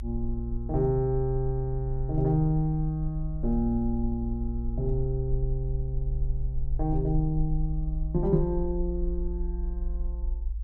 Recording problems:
low-frequency rumble; below 54 Hz, strongest tone 32 Hz, SNR 4 dB

